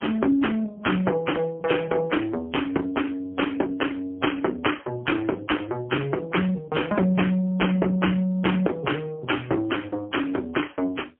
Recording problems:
phone line; 240 Hz to 3.2 kHz, AMR-NB, then MP3

